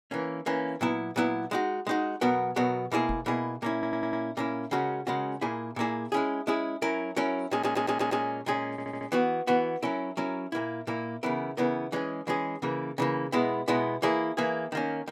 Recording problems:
microphone thump; at 3 s; peak 0 dB vs average level
audio stuttering; at 3.5 s, at 7.5 s and at 8.5 s

